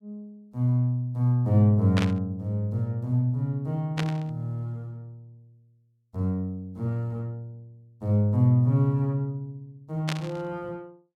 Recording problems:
static burst; at 2 s, at 4 s and at 10 s; peak -1 dB vs average level

